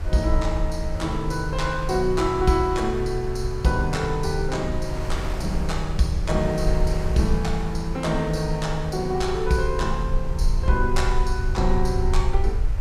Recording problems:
rumble; below 60 Hz, SNR 4 dB
wind on the microphone; below 1.7 kHz, SNR 15 dB

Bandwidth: 15.5 kHz